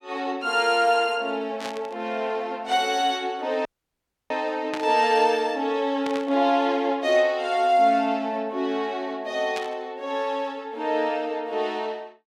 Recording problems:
burst of static; 4 times, first at 1.5 s; peak -5 dB vs average level
dropout; at 3.5 s for 0.5 s

